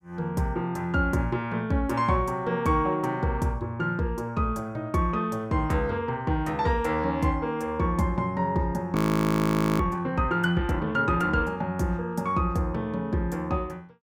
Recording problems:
frozen audio; at 9 s for 1 s

